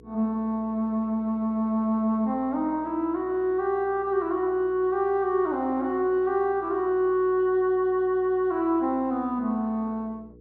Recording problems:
electrical hum; 60 Hz, harmonics up to 480 Hz, SNR 25 dB

